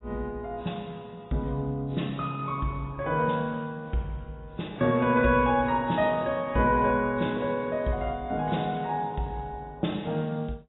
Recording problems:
codec artefacts; AAC, log-spectral distance 3 dB, nothing above 3.8 kHz

